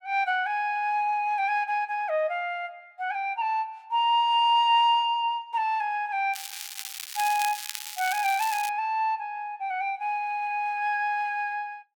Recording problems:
crackle; from 6.5 to 8.5 s; loose cable, SNR 9 dB

